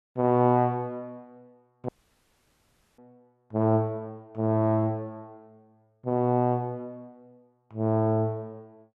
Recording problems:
audio cutting out; at 2 s for 1 s

